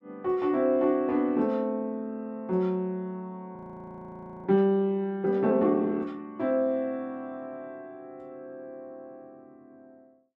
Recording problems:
audio freezing; at 3.5 s for 1 s

